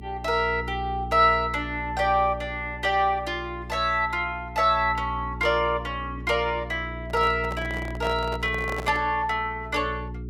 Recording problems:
hum; 60 Hz, harmonics up to 420 Hz, SNR 12 dB
handling noise; from 7 to 9 s; peak -5 dB vs average level

